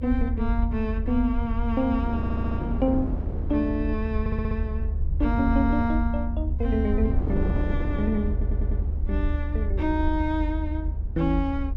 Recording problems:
low-frequency rumble; below 74 Hz, SNR 1 dB
wind on the microphone; below 330 Hz, SNR 8 dB
stutter; at 2 s, at 4 s and at 8.5 s

